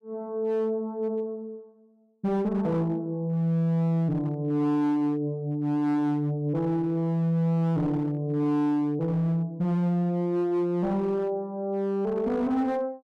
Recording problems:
distorted audio; hard clipping, signal-to-distortion ratio 11 dB

